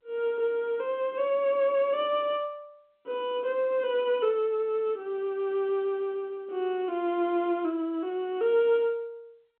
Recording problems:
telephone audio; 170 Hz to 3.8 kHz, G.711

